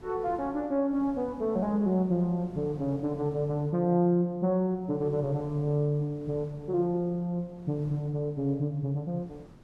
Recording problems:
wind on the microphone; below 390 Hz, SNR 22 dB

